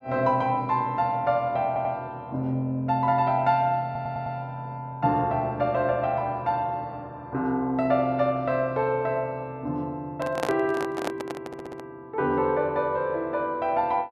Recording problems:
stutter; at 1.5 s, at 4 s and at 11 s
microphone handling noise; from 10 to 12 s; peak +2 dB vs average level

